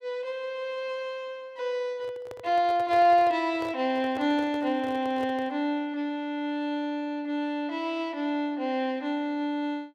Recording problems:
microphone handling noise; from 2 to 5.5 s; peak -8 dB vs average level

